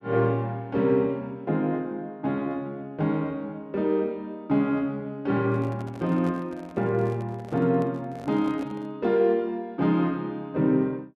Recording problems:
microphone handling noise; from 5.5 to 9 s; peak -11 dB vs average level

